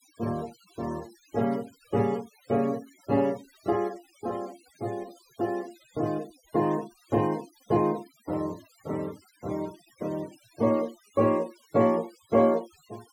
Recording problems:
denoising artefacts; signal-to-artefact ratio 23 dB

